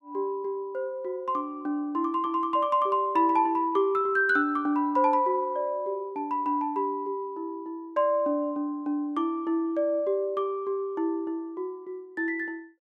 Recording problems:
none

